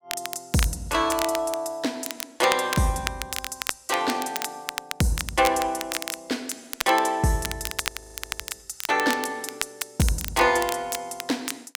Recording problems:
crackle; vinyl, SNR 7 dB
frozen audio; at 8 s for 0.5 s

